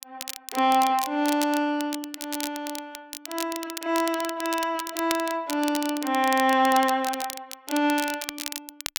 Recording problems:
crackling; vinyl, SNR 10 dB

